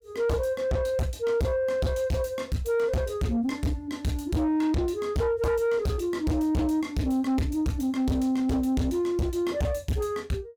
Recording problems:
distortion; soft clipping, signal-to-distortion ratio 6 dB

